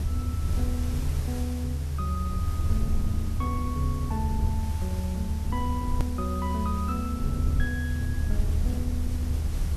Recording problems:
background hiss; slope -3 dB per octave, SNR 11 dB
rumble; below 78 Hz, strongest tone 76 Hz, SNR -4 dB
click at an edit; at 6 s

